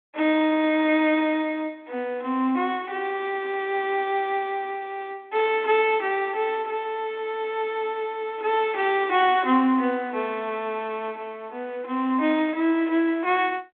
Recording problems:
phone line; 220 Hz to 3.6 kHz, G.726

